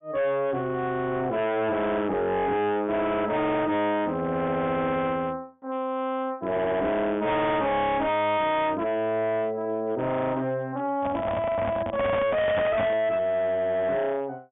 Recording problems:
treble missing; nothing above 3.6 kHz
distorted audio; hard clipping, signal-to-distortion ratio 7 dB
handling noise; from 11 to 13 s; peak +3 dB vs average level

